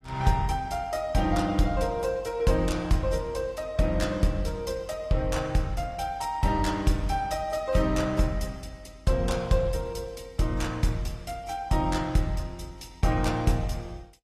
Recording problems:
codec artefacts; AAC, log-spectral distance 3 dB

